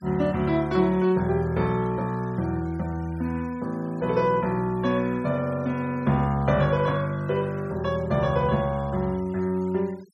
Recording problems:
denoising artefacts; signal-to-artefact ratio 25 dB

